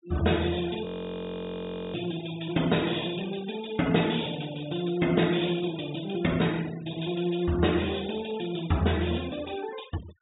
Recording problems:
treble missing; nothing above 4 kHz
noise reduction artefacts; signal-to-artefact ratio 17 dB
frozen audio; at 1 s for 1 s

